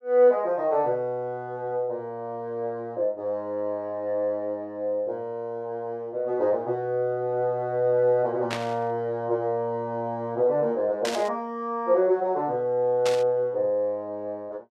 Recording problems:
burst of static; at 8.5 s, at 11 s and at 13 s; peak -1 dB vs average level

